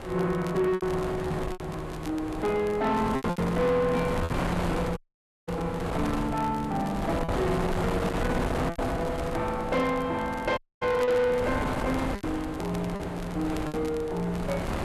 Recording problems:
distorted audio; soft clipping, signal-to-distortion ratio 11 dB
wind noise; below 880 Hz, SNR 5 dB
crackle; vinyl, SNR 21 dB
lost packets; 5% of the sound replaced, filled with repeated pitch periods
audio cutting out; at 5 s for 0.5 s and at 11 s

